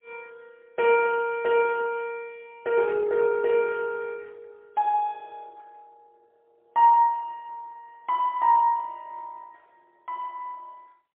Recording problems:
phone line; 130 Hz to 2.8 kHz, AMR-NB, then MP3

